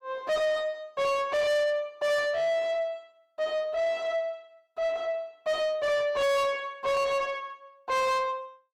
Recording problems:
distorted audio; soft clipping, signal-to-distortion ratio 6 dB

